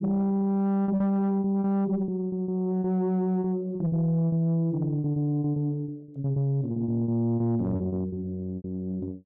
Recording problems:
distortion; soft clipping, signal-to-distortion ratio 11 dB
lost packets; 13% of the sound replaced, filled with repeated pitch periods

